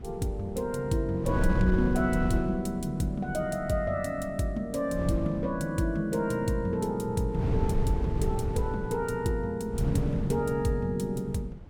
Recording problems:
wind noise; below 150 Hz, SNR 5 dB

